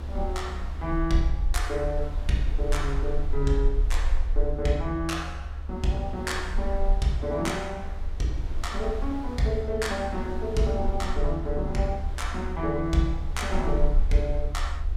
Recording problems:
low-frequency rumble; below 60 Hz, SNR 3 dB
wind noise; below 870 Hz, SNR 16 dB

